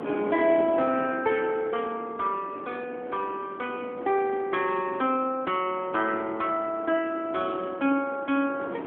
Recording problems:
telephone audio; 240 Hz to 3.4 kHz, AMR-NB
wind on the microphone; below 650 Hz, SNR 12 dB

